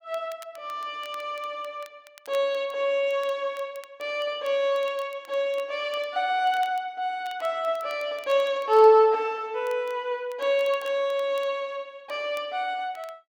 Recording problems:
crackling; vinyl, SNR 27 dB

